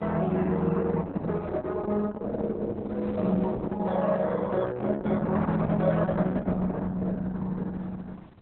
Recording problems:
codec artefacts; Vorbis, then Opus, log-spectral distance 3 dB
wind noise; below 510 Hz, SNR 21 dB

